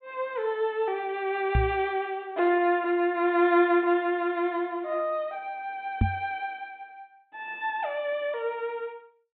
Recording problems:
low-pass filter; nothing above 4 kHz
knock on the microphone; at 1.5 s and at 6 s; peak +6 dB vs average level

